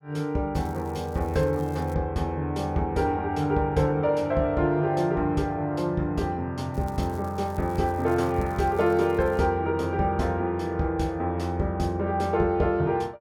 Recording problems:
crackling; from 0.5 to 2 s and from 6.5 to 9.5 s; loose cable, SNR 27 dB

